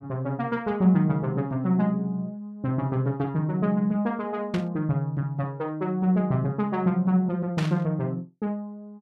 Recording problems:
static burst; at 4.5 s and at 7.5 s; peak -3 dB vs average level

